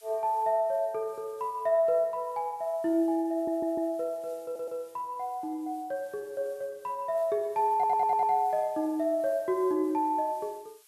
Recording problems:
background hiss; SNR 28 dB
audio stuttering; at 3.5 s, at 4.5 s and at 7.5 s

